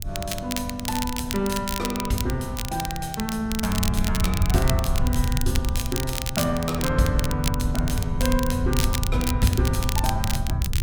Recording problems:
wind noise; below 98 Hz, SNR 2 dB
crackling; vinyl, SNR 5 dB

